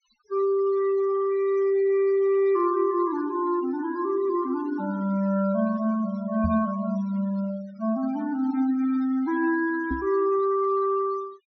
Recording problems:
treble cut off; nothing above 6.2 kHz
noise reduction artefacts; signal-to-artefact ratio 22 dB
microphone bump; at 6.5 s and at 10 s; peak -1 dB vs average level

